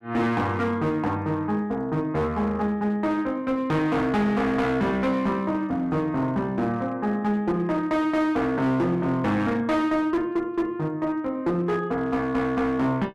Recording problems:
distorted audio; hard clipping, uneven, signal-to-distortion ratio 10 dB

